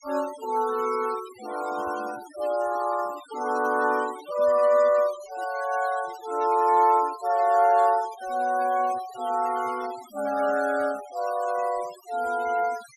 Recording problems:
noise reduction artefacts; signal-to-artefact ratio 19 dB

